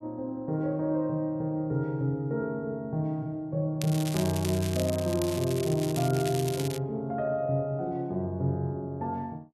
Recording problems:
crackle; from 4 to 7 s; loose cable, SNR 9 dB

